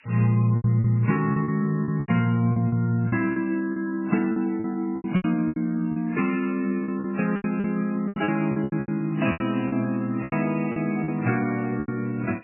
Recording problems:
lossy compression; MP3, then MP3, log-spectral distance 12 dB, nothing above 2.9 kHz
background hiss; SNR 27 dB
lost packets; 14% of the sound replaced, filled with repeated pitch periods

